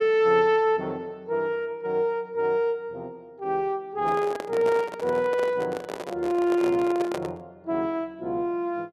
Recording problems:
microphone handling noise; from 4 to 7.5 s; peak -1 dB vs average level

